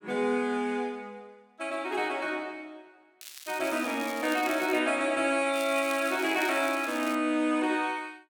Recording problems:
crackling; from 3 to 5 s and from 5.5 to 7 s; loose cable, SNR 15 dB

